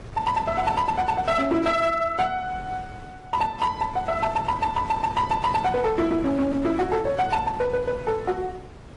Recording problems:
lossy compression; MP3, then AAC, log-spectral distance 2 dB, nothing above 11 kHz
distortion; hard clipping, uneven, signal-to-distortion ratio 12 dB
wind noise; below 670 Hz, SNR 15 dB

